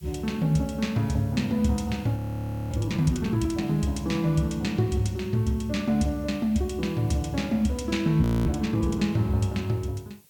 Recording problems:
hiss; SNR 28 dB
frozen audio; at 2 s for 0.5 s and at 8 s

